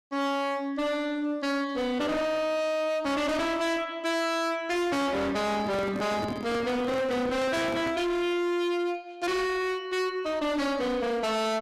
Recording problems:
distortion; hard clipping, uneven, signal-to-distortion ratio 6 dB
handling noise; from 5.5 to 8 s; peak -2 dB vs average level

